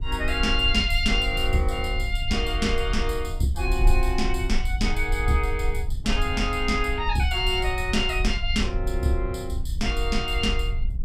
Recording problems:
wind noise; below 58 Hz, SNR 4 dB

